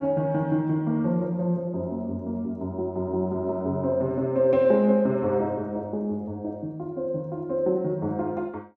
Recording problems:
none

